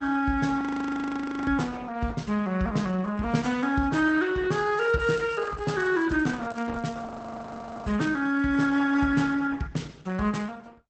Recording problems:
lossy codec; Opus, log-spectral distance 3 dB, nothing above 8 kHz
audio freezing; at 0.5 s for 1 s and at 7 s for 1 s
crackling; from 5 to 7 s; loose cable, SNR 28 dB

